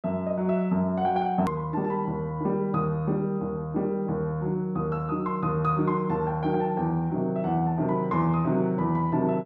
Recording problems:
edit click; at 1.5 s

